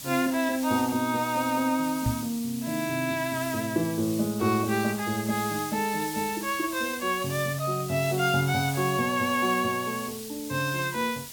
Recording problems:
background hiss; SNR 11 dB
microphone bump; at 2 s; peak +3 dB vs average level

